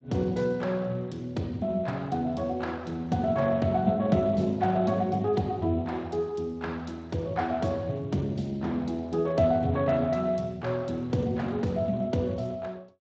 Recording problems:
lossy compression; Speex, log-spectral distance 3 dB

